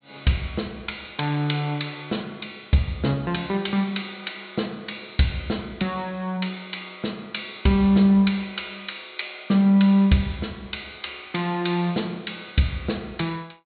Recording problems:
treble missing; nothing above 4.3 kHz

